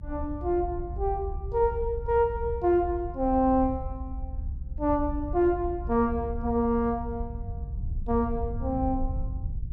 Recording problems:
rumble; below 78 Hz, SNR 8 dB

